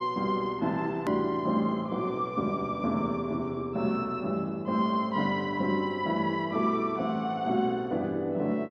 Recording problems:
click at an edit; at 1 s

